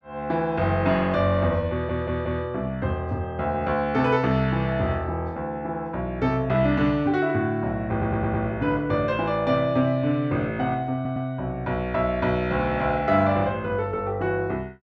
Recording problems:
stutter; at 1.5 s, at 8 s and at 11 s

